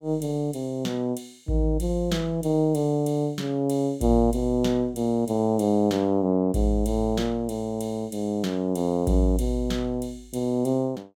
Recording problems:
none

